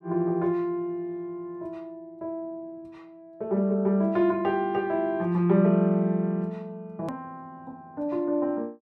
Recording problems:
click at an edit; at 7 s

